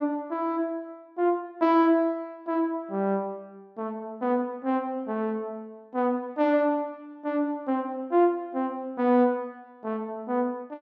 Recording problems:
none

